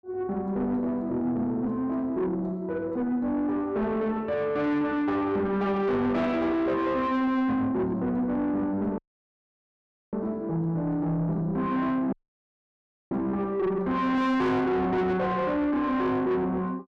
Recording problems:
distortion; soft clipping, signal-to-distortion ratio 7 dB
dropout; at 9 s for 1 s and at 12 s for 1 s

